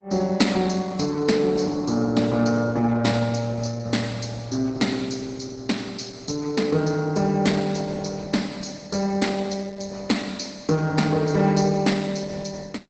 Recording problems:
lossy compression; Opus, log-spectral distance 6 dB

